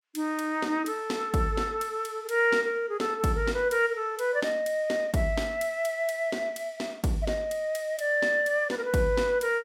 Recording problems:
none

